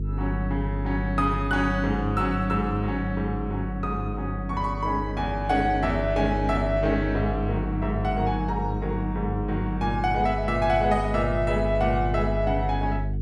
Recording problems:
hum; 50 Hz, harmonics up to 450 Hz, SNR 4 dB

